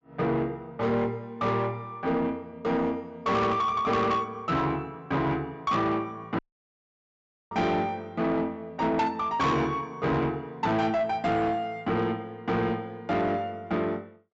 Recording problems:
low-pass filter; nothing above 8 kHz
distorted audio; soft clipping, signal-to-distortion ratio 11 dB
dropout; at 6.5 s for 1 s

